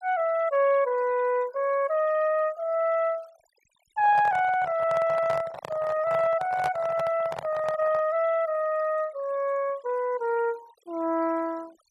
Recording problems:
denoising artefacts; signal-to-artefact ratio 25 dB
microphone handling noise; from 4 to 8 s; peak -2 dB vs average level

